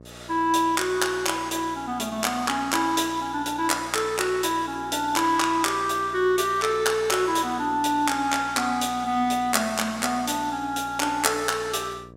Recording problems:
hum; 60 Hz, harmonics up to 1.2 kHz, SNR 22 dB

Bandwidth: 16 kHz